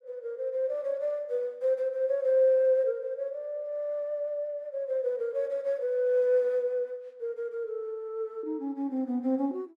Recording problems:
none

